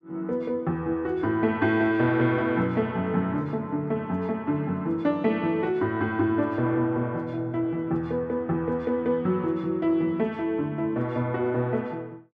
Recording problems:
none

